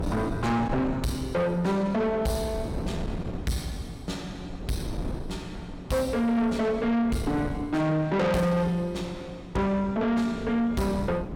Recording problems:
distortion; soft clipping, signal-to-distortion ratio 7 dB
wind noise; below 340 Hz, SNR 11 dB

